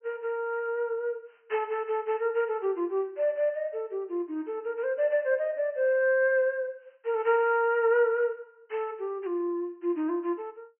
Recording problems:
low-pass filter; nothing above 3.1 kHz

